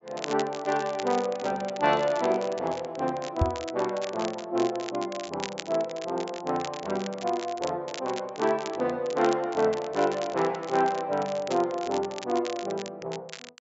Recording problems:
low-pass filter; nothing above 8 kHz
crackling; vinyl, SNR 14 dB
knock on the microphone; at 3.5 s; peak +7 dB vs average level

